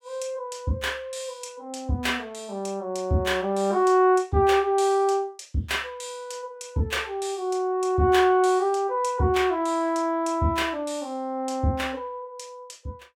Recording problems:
none

